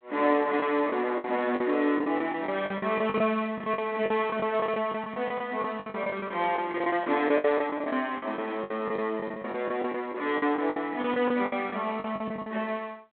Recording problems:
telephone audio; 260 Hz to 3.5 kHz, G.726
lost packets; 15% of the sound replaced, filled with the last packet

